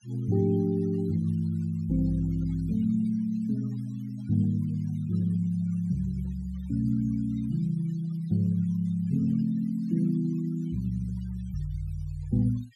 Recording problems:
noise reduction artefacts; signal-to-artefact ratio 24 dB

